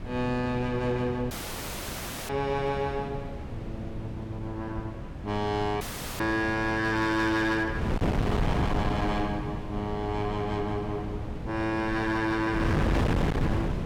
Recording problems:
distortion; hard clipping, signal-to-distortion ratio 11 dB
wind on the microphone; below 370 Hz, SNR 3 dB
dropout; at 1.5 s for 1 s and at 6 s

